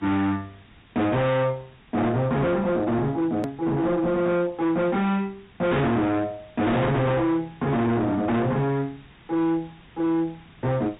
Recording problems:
treble missing; nothing above 4 kHz
lossy codec; MP2, log-spectral distance 4 dB
distortion; hard clipping, signal-to-distortion ratio 7 dB
background hiss; SNR 27 dB
edit click; at 3.5 s

